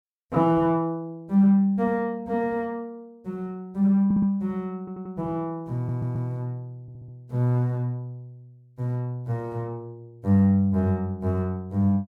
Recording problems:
audio stuttering; 4 times, first at 4 s

